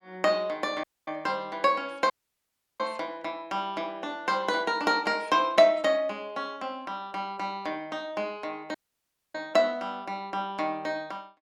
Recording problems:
dropout; at 1 s, at 2 s for 0.5 s and at 9 s for 0.5 s

